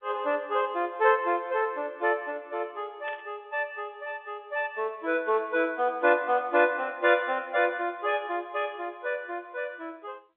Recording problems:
phone line; 300 Hz to 3.6 kHz, G.711
static burst; at 3 s; peak -12 dB vs average level

